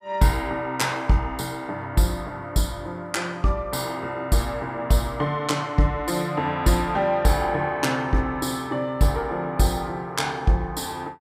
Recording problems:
none

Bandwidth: 15.5 kHz